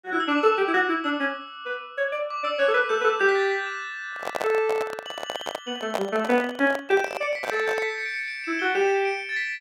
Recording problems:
microphone handling noise; from 4 to 8 s; peak +2 dB vs average level

